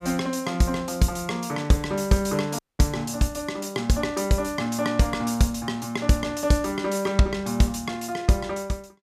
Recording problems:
dropout; at 2.5 s

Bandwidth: 14.5 kHz